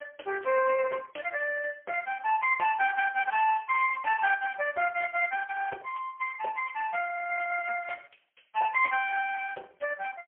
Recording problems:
phone line; 370 Hz to 3 kHz, AMR-NB, then MP3

